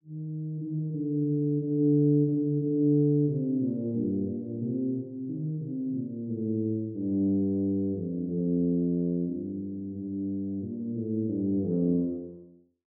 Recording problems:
none

